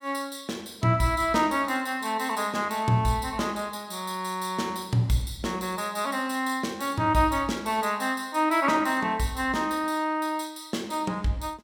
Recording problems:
none

